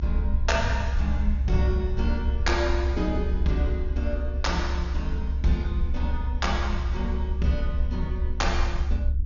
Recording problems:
treble missing; nothing above 6.9 kHz
rumble; below 68 Hz, strongest tone 66 Hz, SNR -2 dB

